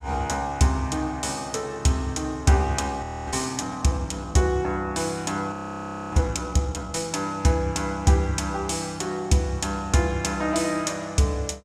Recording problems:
audio freezing; at 3 s and at 5.5 s for 0.5 s

